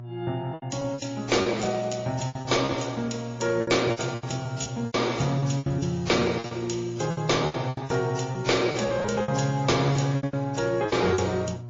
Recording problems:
codec artefacts; MP3, then AAC, log-spectral distance 5 dB, nothing above 6.7 kHz
distorted audio; hard clipping, uneven, signal-to-distortion ratio 11 dB
hum; 60 Hz, harmonics up to 720 Hz, SNR 13 dB
packet loss; 16% of the sound replaced, filled with repeated pitch periods

